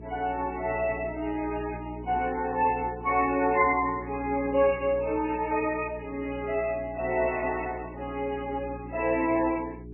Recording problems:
lossy compression; MP3, then MP3, log-spectral distance 4 dB, nothing above 2.7 kHz
hum; 60 Hz, harmonics up to 420 Hz, SNR 14 dB

